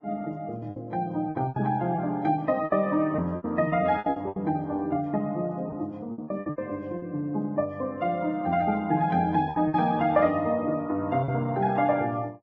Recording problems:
lossy codec; Vorbis, log-spectral distance 2 dB
packet loss; 10% of the sound replaced, filled with repeated pitch periods

